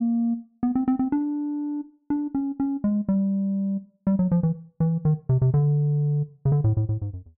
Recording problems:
none

